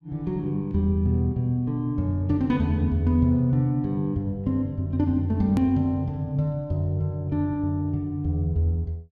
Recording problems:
edit click; at 5.5 s

